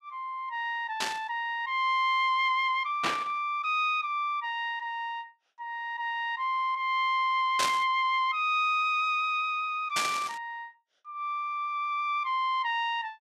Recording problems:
burst of static; 4 times, first at 1 s; peak +3 dB vs average level

